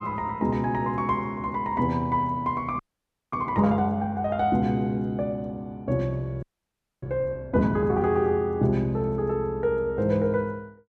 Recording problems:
audio freezing; at 3 s for 0.5 s and at 6.5 s for 0.5 s

